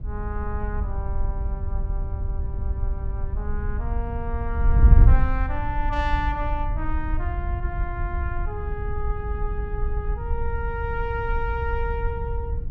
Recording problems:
wind noise; below 74 Hz, SNR -5 dB

